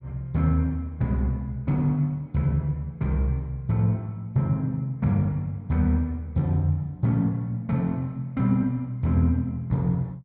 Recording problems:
none

